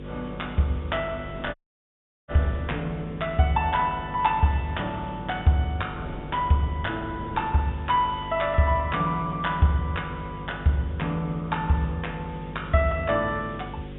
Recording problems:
treble missing; nothing above 3.7 kHz
mains hum; 50 Hz, harmonics up to 550 Hz, SNR 13 dB
background hiss; SNR 28 dB
wind noise; below 490 Hz, SNR 21 dB
audio cutting out; at 1.5 s for 0.5 s

